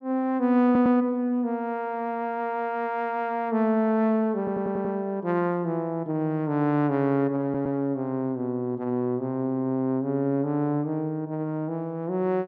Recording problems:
audio stuttering; at 0.5 s, at 4.5 s and at 7.5 s

